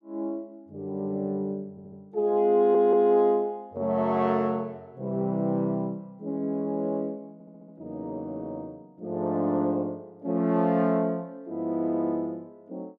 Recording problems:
stutter; at 1.5 s, at 2.5 s and at 7.5 s

